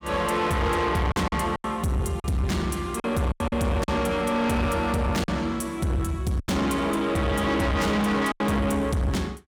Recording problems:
distortion; soft clipping, signal-to-distortion ratio 8 dB
lost packets; 6% of the sound replaced, filled with silence

